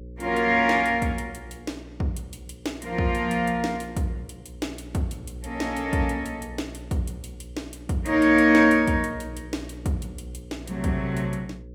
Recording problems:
mains hum; 60 Hz, harmonics up to 540 Hz, SNR 18 dB

